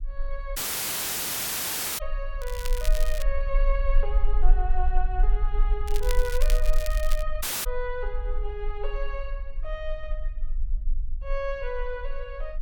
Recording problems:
rumble; below 36 Hz, strongest tone 16 Hz, SNR -4 dB
dropout; at 0.5 s for 1.5 s and at 7.5 s
crackling; at 2.5 s and from 6 to 7 s; loose cable, SNR 5 dB

